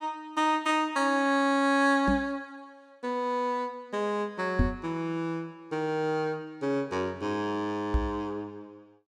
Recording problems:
microphone thump; at 2 s, at 4.5 s and at 8 s; peak +7 dB vs average level

